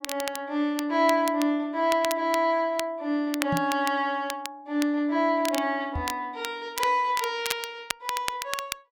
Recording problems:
crackling; vinyl, SNR 10 dB
microphone bump; at 3.5 s and at 6 s; peak 0 dB vs average level

